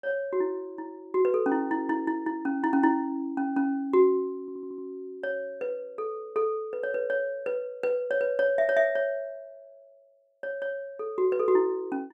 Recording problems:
stutter; at 4.5 s

